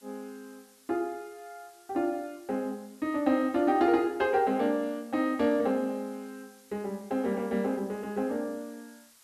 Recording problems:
hiss; slope +2 dB per octave, SNR 27 dB

